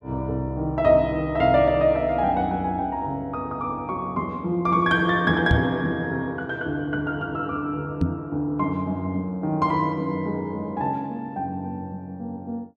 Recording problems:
microphone thump; at 5.5 s and at 8 s; peak +6 dB vs average level

